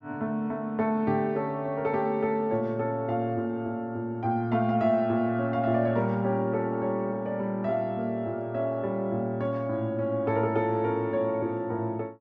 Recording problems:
none

